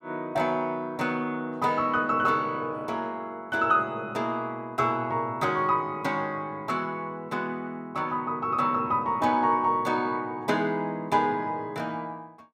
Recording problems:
none

